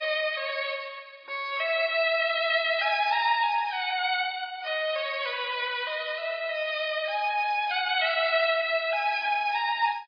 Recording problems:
lossy codec; MP3, log-spectral distance 3 dB, nothing above 4.6 kHz

